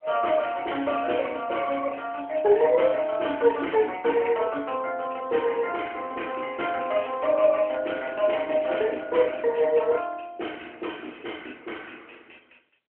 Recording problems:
phone line; 240 Hz to 3.2 kHz, AMR-NB

